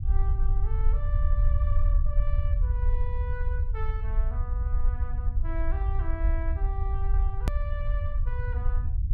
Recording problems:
low-frequency rumble; below 66 Hz, SNR -13 dB
edit click; at 7.5 s

